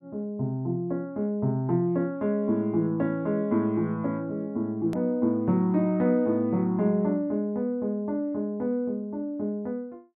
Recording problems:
edit click; at 5 s

